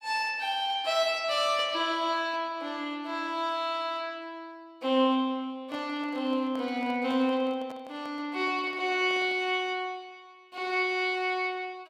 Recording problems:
handling noise; from 5.5 to 9.5 s; peak -11 dB vs average level

